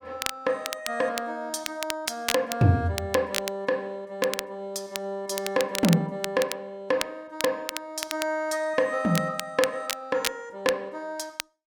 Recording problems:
crackling; vinyl, SNR 6 dB

